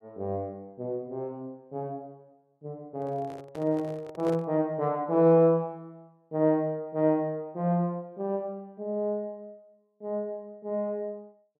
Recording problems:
handling noise; from 3 to 4.5 s; peak -5 dB vs average level

